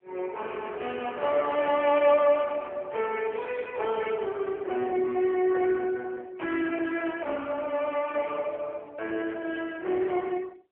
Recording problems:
phone line; 300 Hz to 3.3 kHz, AMR-NB

